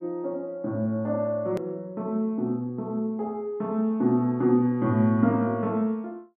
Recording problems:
edit click; at 1.5 s

